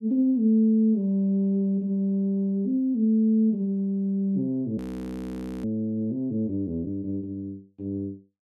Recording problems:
audio freezing; at 5 s for 1 s

